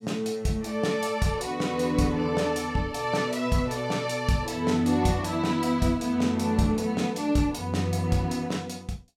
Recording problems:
none

